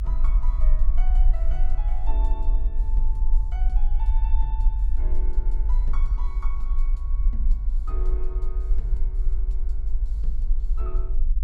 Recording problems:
rumble; below 44 Hz, strongest tone 22 Hz, SNR -17 dB

